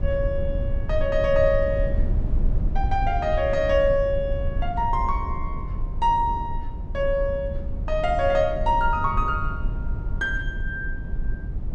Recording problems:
low-frequency rumble; below 74 Hz, SNR 5 dB

